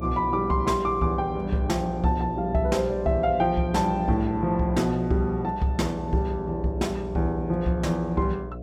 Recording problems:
hum; 60 Hz, harmonics up to 720 Hz, SNR 11 dB

